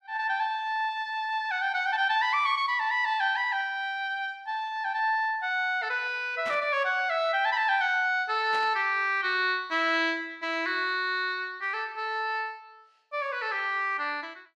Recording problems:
static burst; at 6.5 s and at 8.5 s; peak -8 dB vs average level

